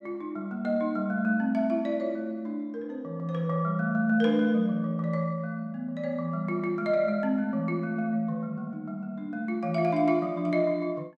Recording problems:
none

